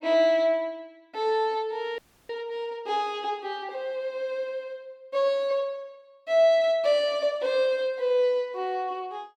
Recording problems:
audio freezing; at 2 s

